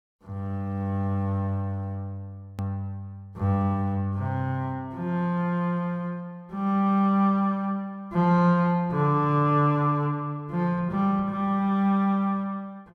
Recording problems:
click at an edit; at 2.5 s

